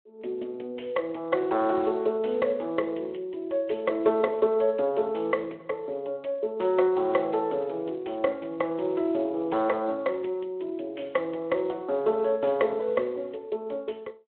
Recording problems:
telephone audio; 300 Hz to 3.4 kHz, Speex

